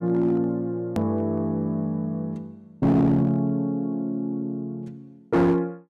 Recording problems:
distorted audio; hard clipping, signal-to-distortion ratio 11 dB
edit click; at 1 s

